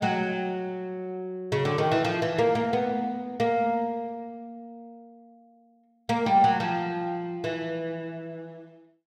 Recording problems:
none

